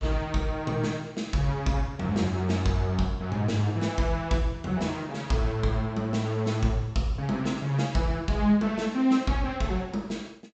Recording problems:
treble cut off; nothing above 8 kHz

